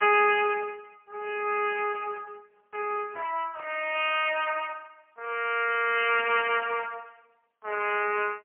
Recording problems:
telephone audio; 340 Hz to 3.1 kHz, AMR-NB, then MP3
burst of static; at 3.5 s and at 6.5 s; peak -16 dB vs average level

